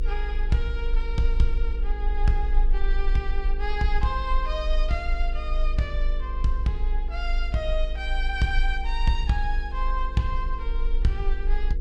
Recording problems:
mains hum; 50 Hz, harmonics up to 500 Hz, SNR 15 dB
rumble; below 50 Hz, strongest tone 26 Hz, SNR -1 dB

